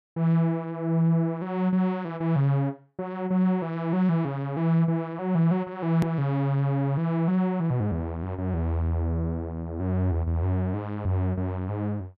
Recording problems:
hard cut with a click; at 6 s

